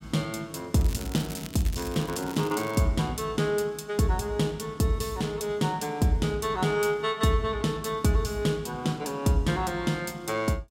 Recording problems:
crackling; from 0.5 to 3 s; loose cable, SNR 15 dB

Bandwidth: 16 kHz